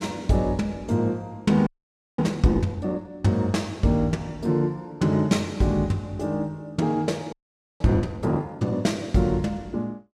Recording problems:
frozen audio; at 1.5 s for 0.5 s and at 7.5 s

